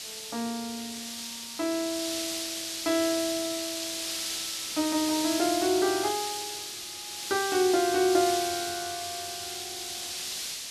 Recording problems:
hiss; SNR 3 dB

